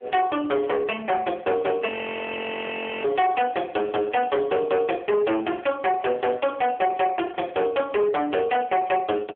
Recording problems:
telephone audio; 300 Hz to 3.2 kHz, AMR-NB
distortion; hard clipping, signal-to-distortion ratio 7 dB
frozen audio; at 2 s for 1 s

